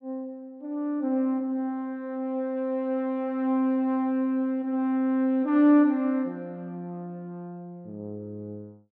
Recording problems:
none

